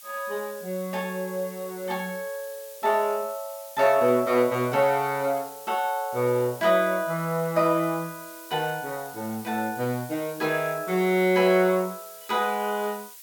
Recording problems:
background hiss; slope +4 dB per octave, SNR 17 dB

